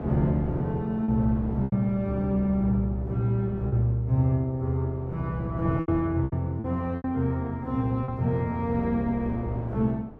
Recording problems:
wind noise; below 460 Hz, SNR 14 dB
lost packets; 5% of the sound replaced, filled with repeated pitch periods

